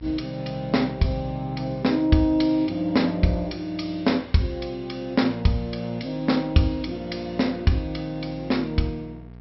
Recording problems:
treble missing; nothing above 5.6 kHz
hum; 60 Hz, harmonics up to 960 Hz, SNR 21 dB

